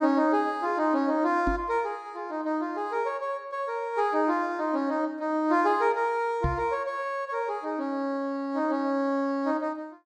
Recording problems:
knock on the microphone; at 1.5 s and at 6.5 s; peak +3 dB vs average level

